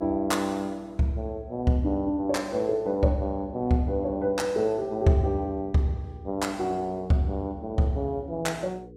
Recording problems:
electrical hum; 60 Hz, harmonics up to 480 Hz, SNR 22 dB

